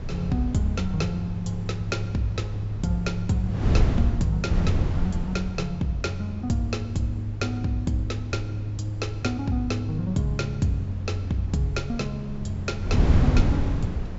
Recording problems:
treble missing; nothing above 8 kHz
wind noise; below 150 Hz, SNR 3 dB

